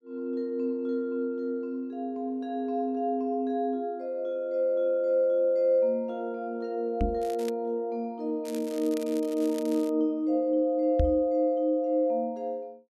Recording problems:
knock on the microphone; at 7 s and at 11 s; peak +5 dB vs average level
crackling; at 7 s and from 8.5 to 10 s; loose cable, SNR 19 dB

